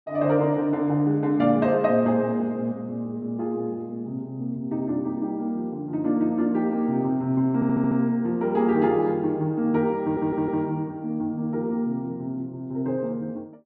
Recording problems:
audio stuttering; at 7.5 s and at 10 s

